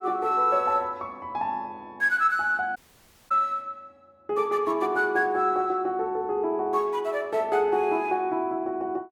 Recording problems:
audio cutting out; at 3 s for 0.5 s

